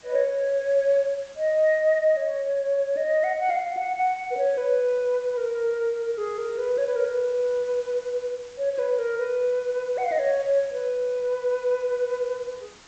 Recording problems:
lossy compression; G.722, log-spectral distance 2 dB
background hiss; slope -1 dB per octave, SNR 25 dB

